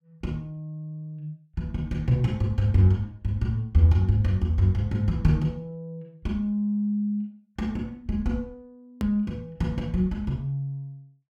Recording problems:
click at an edit; at 9 s

